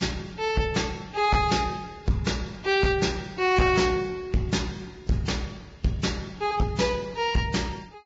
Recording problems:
lossy codec; Vorbis, log-spectral distance 4 dB, nothing above 7.3 kHz
distorted audio; soft clipping, signal-to-distortion ratio 10 dB

